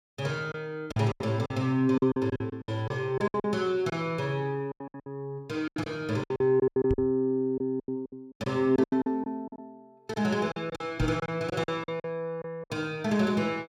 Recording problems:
lost packets; 15% of the sound replaced, filled with silence
microphone bump; at 7 s and at 11 s; peak +2 dB vs average level

